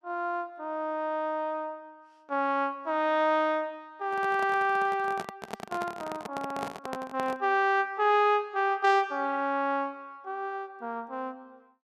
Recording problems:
handling noise; from 4 to 7.5 s; peak -3 dB vs average level

